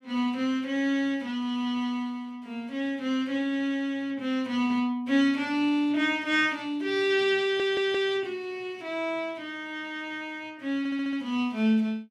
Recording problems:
stutter; at 7.5 s and at 11 s

